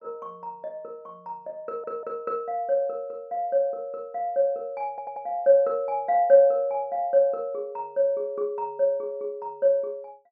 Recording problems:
audio stuttering; at 1.5 s and at 5 s

